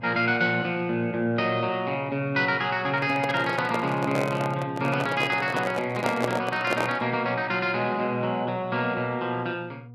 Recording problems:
hum; 60 Hz, harmonics up to 960 Hz, SNR 18 dB
microphone handling noise; from 3 to 7 s; peak +2 dB vs average level

